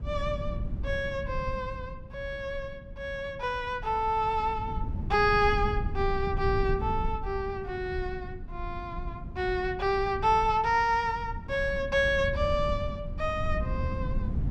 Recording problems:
rumble; below 110 Hz, SNR 8 dB

